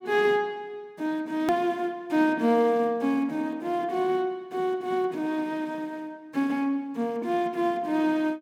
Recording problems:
click at an edit; at 1.5 s

